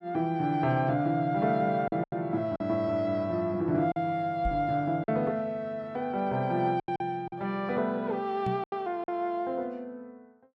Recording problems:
lost packets; 5% of the sound replaced, filled with silence
microphone thump; at 4.5 s and at 8.5 s; peak -1 dB vs average level

